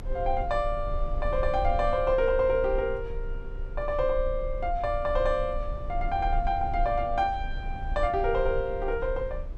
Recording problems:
low-frequency rumble; below 46 Hz, strongest tone 28 Hz, SNR 8 dB

